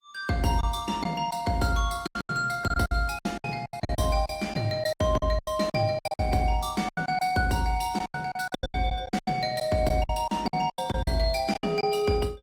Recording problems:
lossy compression; Opus, log-spectral distance 3 dB, nothing above 19 kHz
lost packets; 16% of the sound replaced, filled with silence

